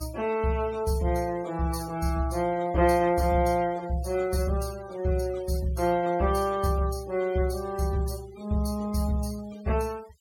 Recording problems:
denoising artefacts; signal-to-artefact ratio 20 dB

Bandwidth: 17 kHz